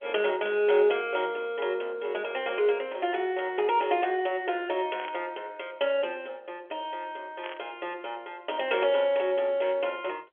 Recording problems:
phone line; 320 Hz to 3.3 kHz, G.711
burst of static; at 5 s and at 7.5 s; peak -7 dB vs average level

